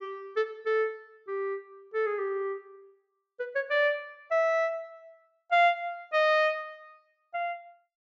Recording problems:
treble cut off; nothing above 8 kHz

